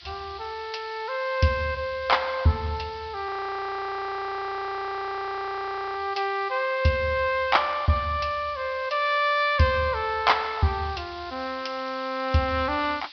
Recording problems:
treble cut off; nothing above 5.5 kHz
hiss; SNR 18 dB
frozen audio; at 3.5 s for 2.5 s

